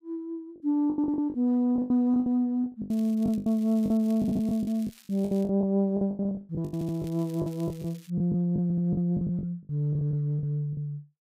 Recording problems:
packet loss; 16% of the sound replaced, filled with the last packet
crackling; from 3 to 5.5 s and from 6.5 to 8 s; loose cable, SNR 26 dB
stutter; at 4 s, at 6.5 s and at 8.5 s

